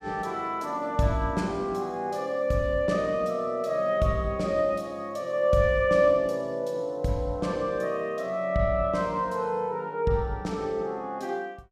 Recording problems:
none

